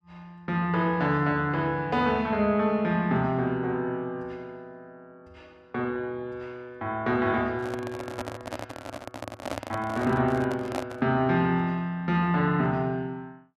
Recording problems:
microphone handling noise; from 7.5 to 11 s; peak -2 dB vs average level

